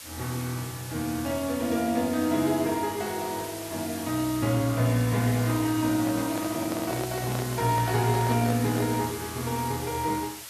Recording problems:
hiss; slope +2 dB per octave, SNR 11 dB
handling noise; from 6 to 9 s; peak -5 dB vs average level

